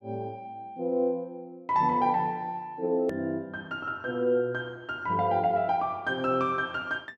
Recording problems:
hard cut with a click; at 3 s

